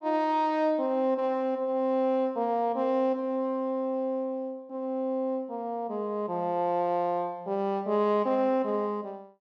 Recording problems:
none

